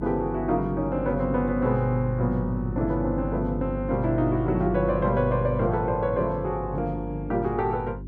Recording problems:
electrical hum; 50 Hz, harmonics up to 400 Hz, SNR 8 dB

